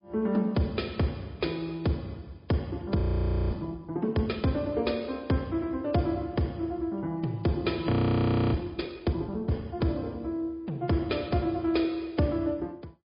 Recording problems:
low-pass filter; nothing above 5 kHz
lossy compression; MP3, log-spectral distance 3 dB
frozen audio; at 3 s for 0.5 s and at 8 s for 0.5 s

